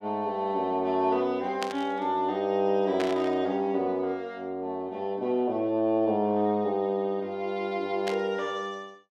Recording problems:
burst of static; at 1.5 s, at 3 s and at 8 s; peak -2 dB vs average level

